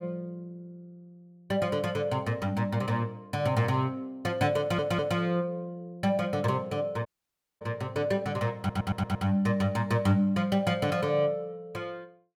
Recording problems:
audio stuttering; at 4.5 s and at 8.5 s
dropout; at 7 s for 0.5 s

